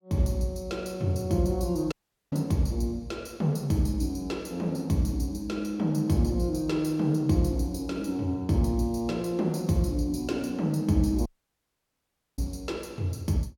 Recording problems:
audio cutting out; at 2 s and at 11 s for 1 s

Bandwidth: 18 kHz